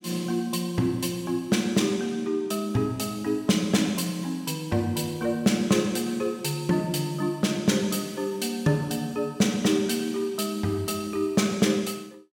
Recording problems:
none

